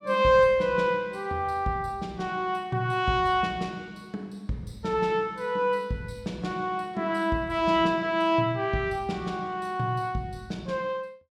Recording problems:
none

